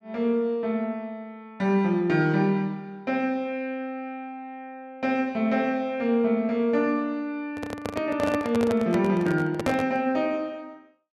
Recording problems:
handling noise; from 7.5 to 10 s; peak +1 dB vs average level

